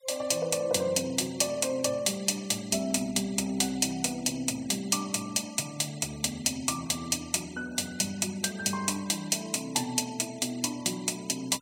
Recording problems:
noise reduction artefacts; signal-to-artefact ratio 21 dB

